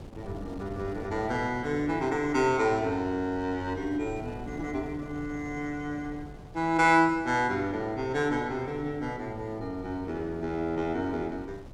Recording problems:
wind noise; below 350 Hz, SNR 16 dB

